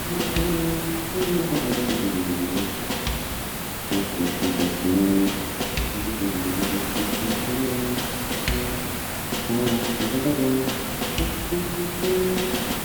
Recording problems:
background hiss; slope -4 dB per octave, SNR 2 dB

